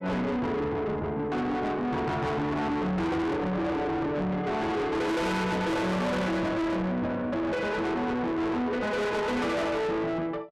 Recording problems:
distorted audio; soft clipping, signal-to-distortion ratio 6 dB

